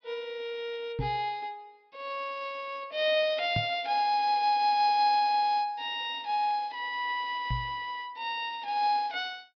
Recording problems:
low-pass filter; nothing above 5.5 kHz
knock on the microphone; at 1 s, at 3.5 s and at 7.5 s; peak 0 dB vs average level

